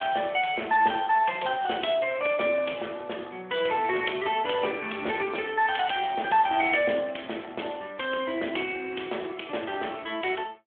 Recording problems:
phone line; 260 Hz to 3.4 kHz, Speex

